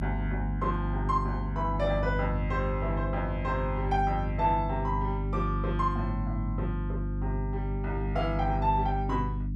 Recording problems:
hum; 50 Hz, harmonics up to 300 Hz, SNR 0 dB

